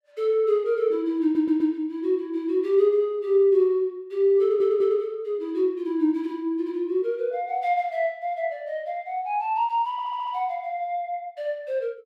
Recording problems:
audio stuttering; at 1 s, at 4.5 s and at 10 s

